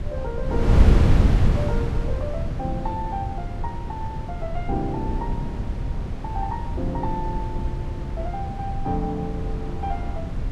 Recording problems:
wind on the microphone; below 130 Hz, SNR -6 dB

